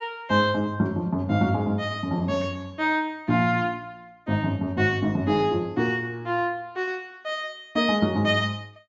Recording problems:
low-pass filter; nothing above 7.6 kHz

